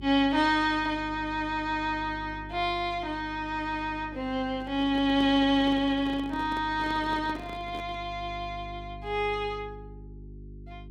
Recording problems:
mains hum; 50 Hz, harmonics up to 400 Hz, SNR 16 dB
microphone handling noise; from 4.5 to 8 s; peak -7 dB vs average level

